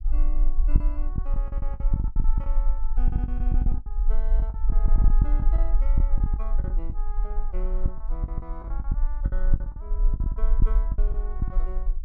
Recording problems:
low-frequency rumble; below 44 Hz, strongest tone 24 Hz, SNR -15 dB
lost packets; 15% of the sound replaced, filled with the last packet

